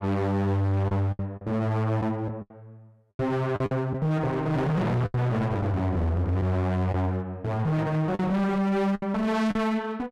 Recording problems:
distorted audio; hard clipping, uneven, signal-to-distortion ratio 4 dB
packet loss; 6% of the sound replaced, filled with the last packet

